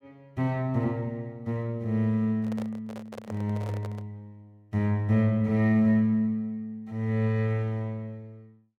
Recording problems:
handling noise; from 2.5 to 4 s; peak -9 dB vs average level

